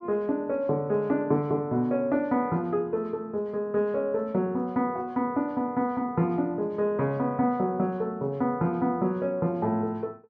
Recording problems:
none

